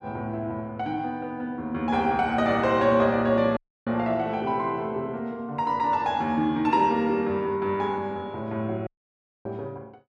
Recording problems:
dropout; at 3.5 s and at 9 s for 0.5 s

